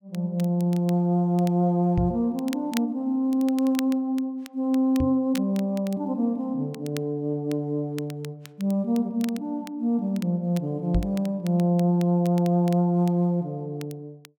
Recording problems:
crackle; vinyl, SNR 21 dB
knock on the microphone; at 2 s, at 5 s and at 11 s; peak +2 dB vs average level

